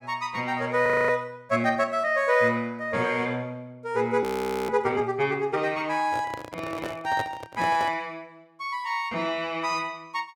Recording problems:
frozen audio; at 1 s and at 4 s
handling noise; from 6 to 8 s; peak -3 dB vs average level

